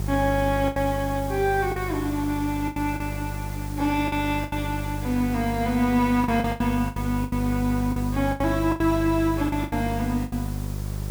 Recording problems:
electrical hum; 50 Hz, harmonics up to 600 Hz, SNR 6 dB
hiss; slope -3 dB per octave, SNR 16 dB
lost packets; 10% of the sound replaced, filled with the last packet

